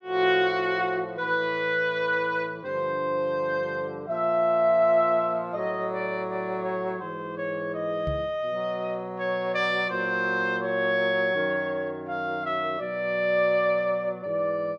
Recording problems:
knock on the microphone; at 8 s; peak -3 dB vs average level

